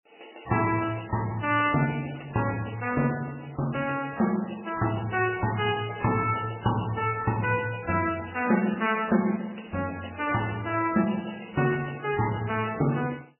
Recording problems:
codec artefacts; MP3, log-spectral distance 14 dB, nothing above 2.9 kHz

